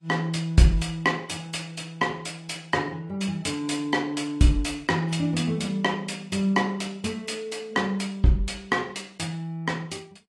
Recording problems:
lossy compression; AAC, log-spectral distance 3 dB

